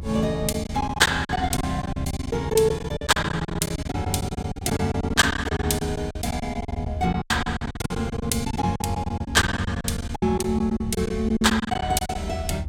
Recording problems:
low-frequency rumble; below 98 Hz, SNR 9 dB
lost packets; 18% of the sound replaced, filled with silence

